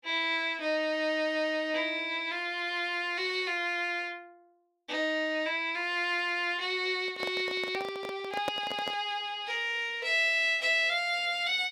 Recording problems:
handling noise; from 7 to 9 s; peak 0 dB vs average level

